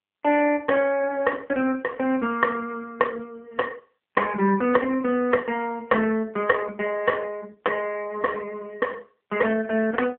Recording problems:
phone line; 280 Hz to 3 kHz, AMR-NB

